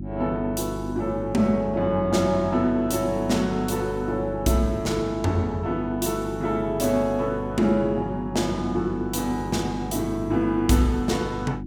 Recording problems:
mains hum; 50 Hz, harmonics up to 350 Hz, SNR 9 dB

